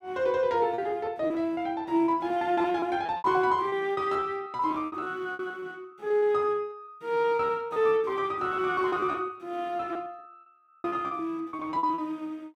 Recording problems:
lost packets; 16% of the sound replaced, filled with repeated pitch periods

